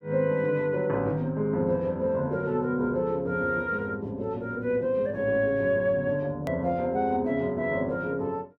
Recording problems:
hard cut with a click; at 6.5 s

